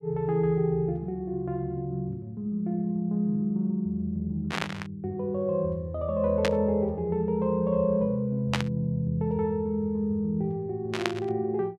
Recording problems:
burst of static; 4 times, first at 4.5 s; peak +4 dB vs average level

